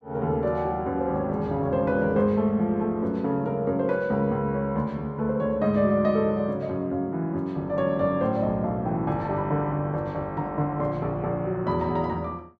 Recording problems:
none

